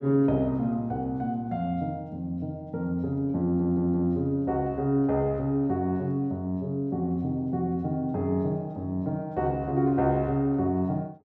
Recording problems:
stutter; at 3.5 s

